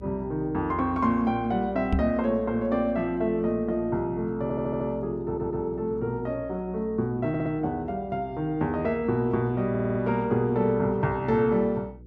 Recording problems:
hum; 60 Hz, harmonics up to 480 Hz, SNR 19 dB
microphone bump; at 2 s; peak +4 dB vs average level
stutter; 4 times, first at 4.5 s

